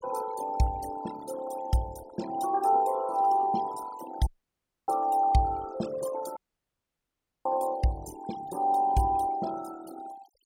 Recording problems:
denoising artefacts; signal-to-artefact ratio 15 dB
dropout; at 4.5 s for 0.5 s and at 6.5 s for 1 s

